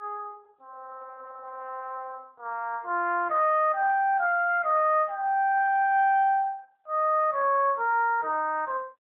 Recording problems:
telephone audio; 300 Hz to 3.1 kHz, AMR-NB

